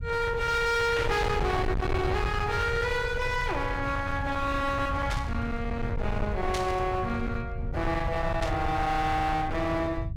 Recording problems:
distortion; hard clipping, uneven, signal-to-distortion ratio 7 dB
rumble; below 150 Hz, SNR 5 dB
static burst; 4 times, first at 1 s; peak -3 dB vs average level

